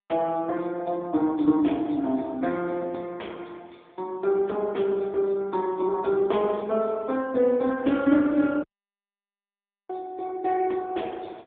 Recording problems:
telephone audio; 220 Hz to 2.8 kHz, AMR-NB
dropout; at 8.5 s for 1.5 s

